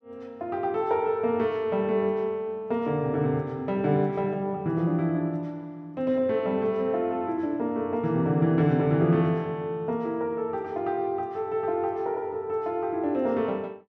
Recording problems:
none

